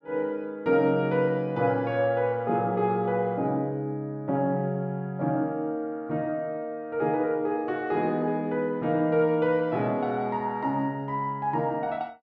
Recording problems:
none

